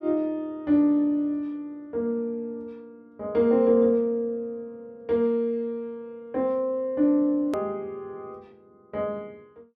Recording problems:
click at an edit; at 7.5 s

